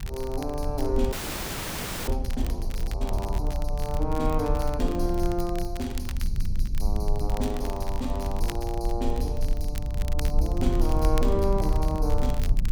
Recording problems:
low-frequency rumble; below 60 Hz, SNR -1 dB
crackling; vinyl, SNR 14 dB
frozen audio; at 1 s for 1 s

